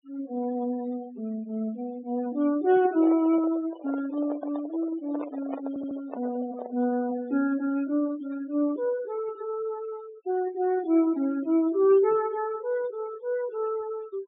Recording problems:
treble cut off; nothing above 4 kHz
denoising artefacts; signal-to-artefact ratio 19 dB
microphone handling noise; from 3 to 7 s; peak -5 dB vs average level
stutter; at 5.5 s

